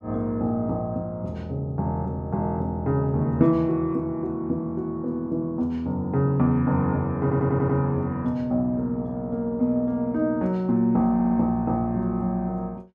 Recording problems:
stutter; at 7 s and at 11 s

